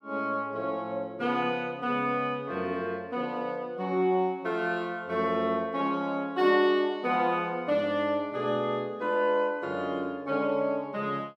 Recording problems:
none

